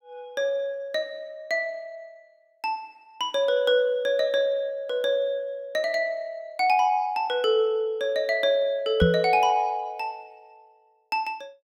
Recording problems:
knock on the microphone; at 9 s; peak +7 dB vs average level

